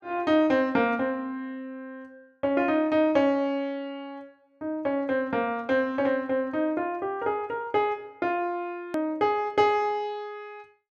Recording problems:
click at an edit; at 9 s

